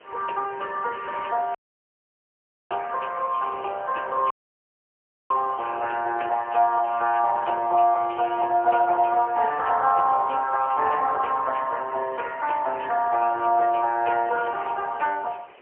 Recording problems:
telephone audio; 300 Hz to 3.1 kHz, AMR-NB, then MP3
background hiss; SNR 27 dB
audio cutting out; at 1.5 s for 1 s and at 4.5 s for 1 s

